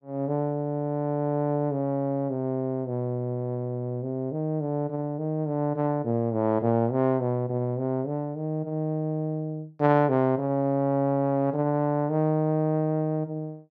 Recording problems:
none

